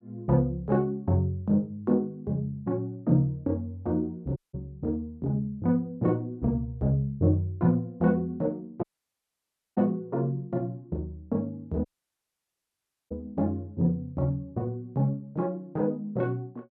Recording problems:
audio cutting out; at 4.5 s, at 9 s for 1 s and at 12 s for 1.5 s

